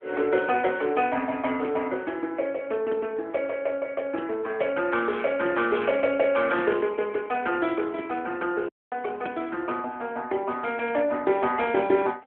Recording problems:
telephone audio; 260 Hz to 3.3 kHz, AMR-NB
audio cutting out; at 8.5 s

